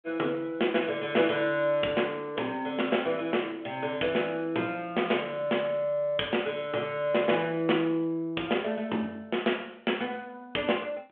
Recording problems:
phone line; 240 Hz to 3.4 kHz, G.726

